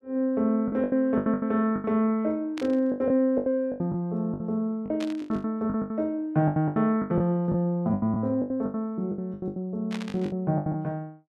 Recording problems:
lost packets; 18% of the sound replaced, filled with the last packet
static burst; at 2.5 s, at 5 s and at 10 s; peak -8 dB vs average level

